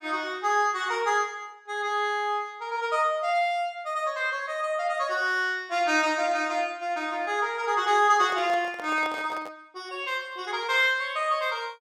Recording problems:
microphone handling noise; from 8 to 9.5 s; peak -8 dB vs average level

